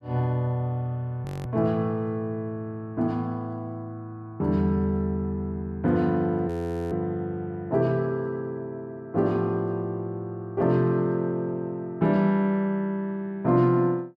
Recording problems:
audio freezing; at 1.5 s and at 6.5 s

